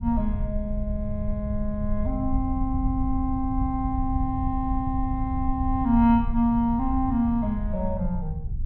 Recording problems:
low-pass filter; nothing above 4 kHz
rumble; below 84 Hz, SNR 4 dB

